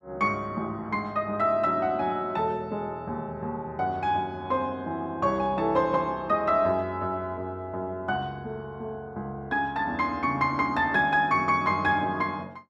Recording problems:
none

